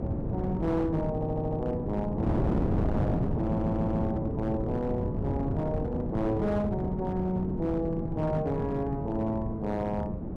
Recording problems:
distorted audio; hard clipping, signal-to-distortion ratio 12 dB
wind noise; below 300 Hz, SNR 1 dB
audio stuttering; at 1 s and at 3.5 s

